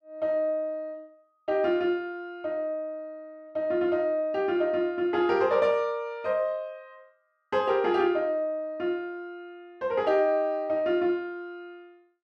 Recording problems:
none

